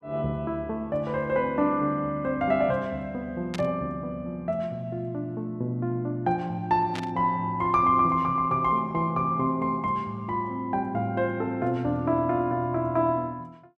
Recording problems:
static burst; at 3.5 s and at 7 s; peak -5 dB vs average level

